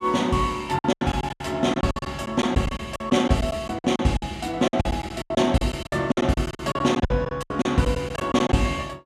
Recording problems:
packet loss; 17% of the sound replaced, filled with silence

